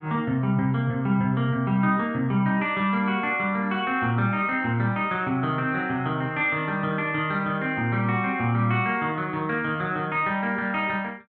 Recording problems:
none

